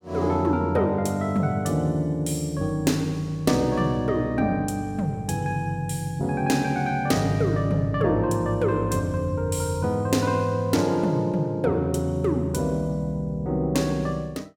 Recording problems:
none

